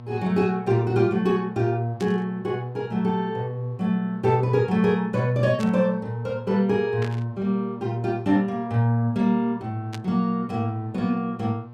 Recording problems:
hum; 60 Hz, harmonics up to 1.3 kHz, SNR 18 dB
static burst; 4 times, first at 2 s; peak -9 dB vs average level

